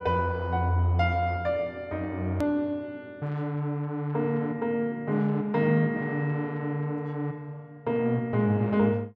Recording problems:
click at an edit; at 2.5 s

